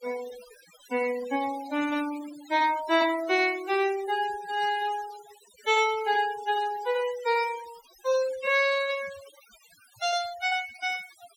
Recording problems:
denoising artefacts; signal-to-artefact ratio 17 dB

